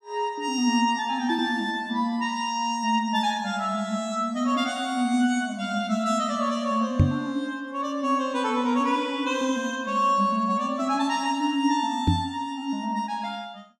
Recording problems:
microphone bump; at 7 s and at 12 s; peak +9 dB vs average level

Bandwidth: 14.5 kHz